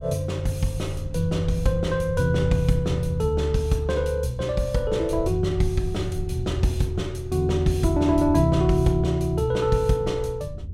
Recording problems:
low-frequency rumble; below 100 Hz, SNR 12 dB

